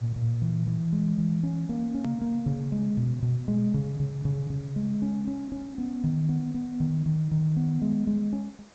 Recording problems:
low-pass filter; nothing above 8 kHz
background hiss; slope -4 dB per octave, SNR 27 dB
hard cut with a click; at 2 s

